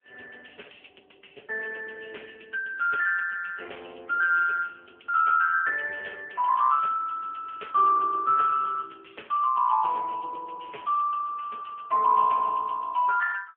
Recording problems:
telephone audio; 370 Hz to 2.6 kHz, AMR-NB

